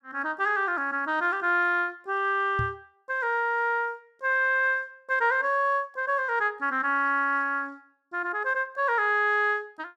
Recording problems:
knock on the microphone; at 2.5 s; peak -3 dB vs average level

